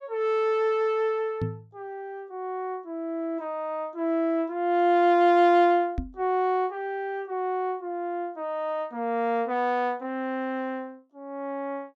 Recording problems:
knock on the microphone; at 1.5 s and at 6 s; peak 0 dB vs average level

